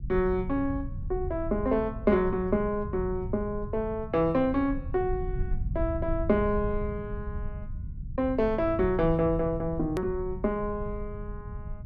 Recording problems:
rumble; below 100 Hz, SNR 9 dB
edit click; at 10 s

